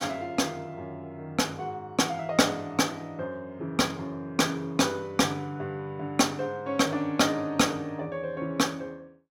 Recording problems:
none

